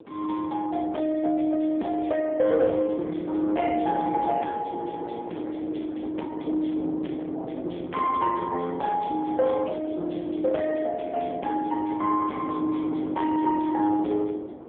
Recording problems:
phone line; 240 Hz to 3.3 kHz, AMR-NB
distorted audio; soft clipping, signal-to-distortion ratio 11 dB
wind on the microphone; below 560 Hz, SNR 13 dB

